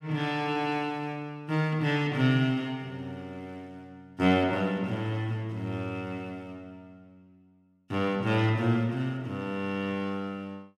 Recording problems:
none

